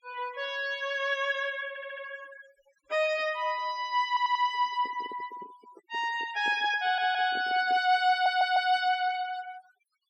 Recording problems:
denoising artefacts; signal-to-artefact ratio 21 dB
stutter; 4 times, first at 1.5 s
handling noise; from 4.5 to 8 s; peak -12 dB vs average level

